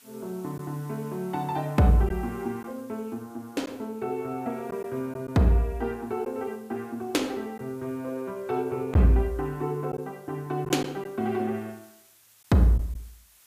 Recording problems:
hiss; slope +2 dB per octave, SNR 27 dB
packet loss; 1.5% of the sound replaced, filled with silence

